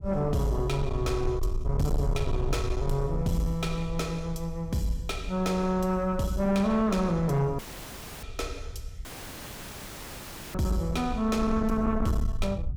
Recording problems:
distorted audio; soft clipping, signal-to-distortion ratio 11 dB
rumble; below 72 Hz, SNR 7 dB
audio cutting out; at 7.5 s for 0.5 s and at 9 s for 1.5 s

